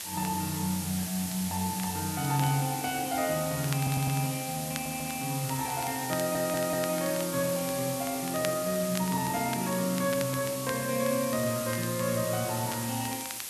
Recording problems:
background hiss; slope +2 dB per octave, SNR 5 dB
crackle; vinyl, SNR 15 dB
stutter; at 4 s, at 4.5 s and at 6 s

